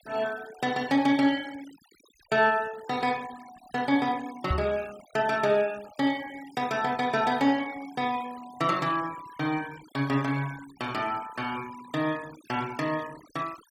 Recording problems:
noise reduction artefacts; signal-to-artefact ratio 19 dB
microphone thump; at 4.5 s; peak +3 dB vs average level

